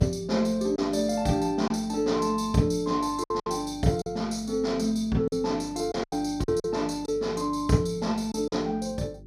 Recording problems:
hum; 50 Hz, harmonics up to 400 Hz, SNR 21 dB
lost packets; 5% of the sound replaced, filled with silence

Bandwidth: 15 kHz